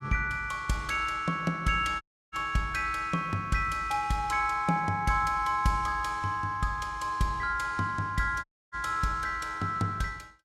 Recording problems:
audio cutting out; at 2 s and at 8.5 s

